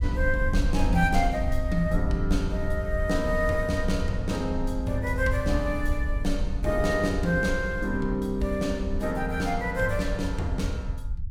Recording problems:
low-frequency rumble; below 72 Hz, SNR 4 dB

